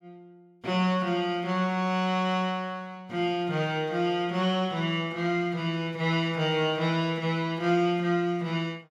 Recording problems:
none

